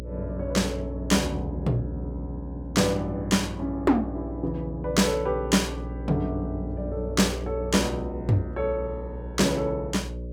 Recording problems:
mains hum; 60 Hz, harmonics up to 600 Hz, SNR 9 dB

